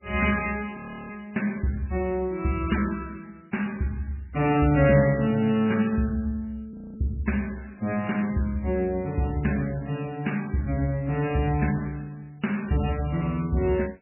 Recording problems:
lossy codec; MP3, log-spectral distance 4 dB, nothing above 2.5 kHz
frozen audio; at 1 s and at 6.5 s

